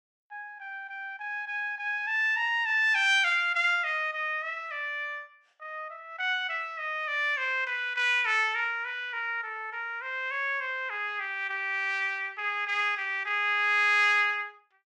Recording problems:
none

